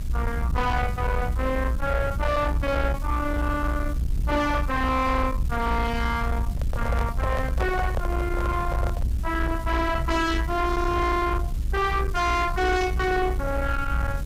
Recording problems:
distortion; soft clipping, signal-to-distortion ratio 10 dB
hiss; slope -2 dB per octave, SNR 21 dB
rumble; below 88 Hz, SNR 2 dB
microphone handling noise; from 6.5 to 9 s; peak 0 dB vs average level

